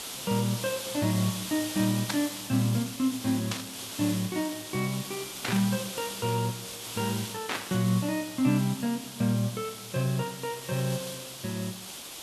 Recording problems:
hiss; SNR 7 dB
static burst; 4 times, first at 2 s; peak +3 dB vs average level

